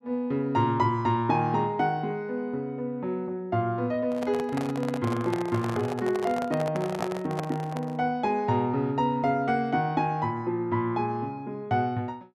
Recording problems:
handling noise; from 4 to 8 s; peak +1 dB vs average level

